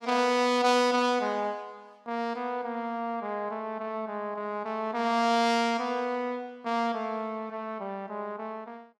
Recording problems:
none

